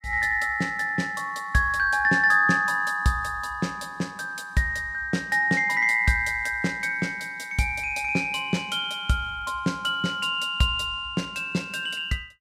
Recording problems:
none

